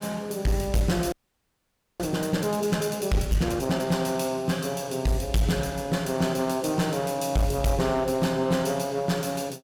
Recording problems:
distortion; hard clipping, uneven, signal-to-distortion ratio 10 dB
frozen audio; at 1 s for 1 s

